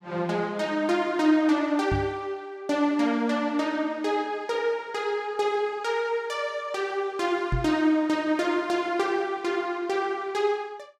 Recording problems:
microphone bump; at 2 s and at 7.5 s; peak +2 dB vs average level

